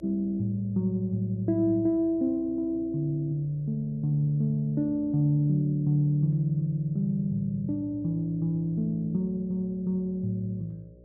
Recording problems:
hum; 60 Hz, harmonics up to 600 Hz, SNR 25 dB

